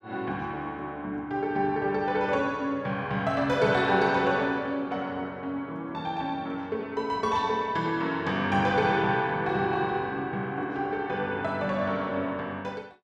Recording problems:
none

